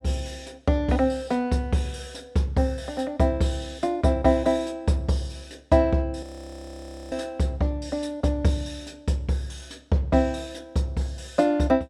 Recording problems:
audio freezing; at 6 s for 1 s

